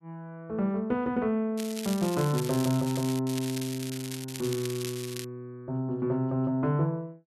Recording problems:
crackle; from 1.5 to 3 s and from 3.5 to 5.5 s; loose cable, SNR 10 dB

